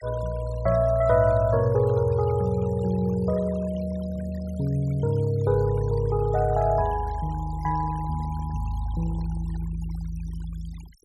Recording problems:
denoising artefacts; signal-to-artefact ratio 22 dB

